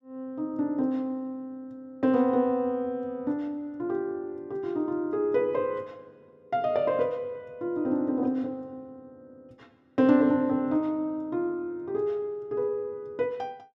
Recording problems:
none

